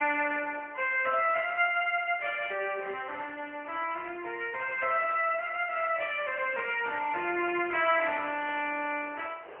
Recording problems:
telephone audio; 370 Hz to 3.1 kHz, AMR-NB, then MP3
wind on the microphone; below 1.5 kHz, SNR 23 dB

